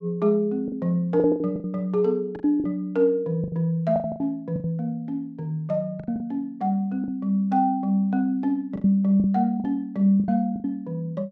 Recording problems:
lost packets; 10% of the sound replaced, filled with the last packet

